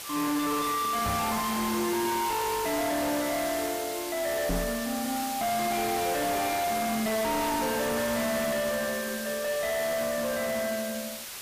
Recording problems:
distorted audio; soft clipping, signal-to-distortion ratio 5 dB
background hiss; slope +1 dB per octave, SNR 6 dB
microphone bump; at 1 s and at 4.5 s; peak +6 dB vs average level

